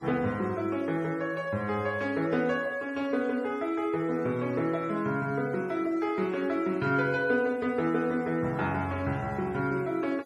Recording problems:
noise reduction artefacts; signal-to-artefact ratio 24 dB

